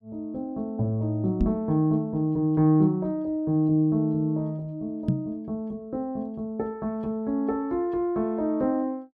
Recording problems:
knock on the microphone; at 1.5 s and at 5 s; peak +6 dB vs average level

